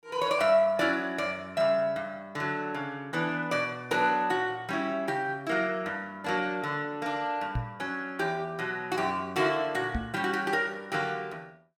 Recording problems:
microphone bump; at 7.5 s and at 10 s; peak +1 dB vs average level

